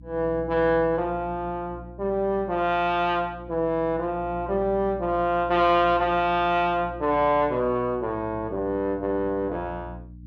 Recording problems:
hum; 60 Hz, harmonics up to 300 Hz, SNR 18 dB

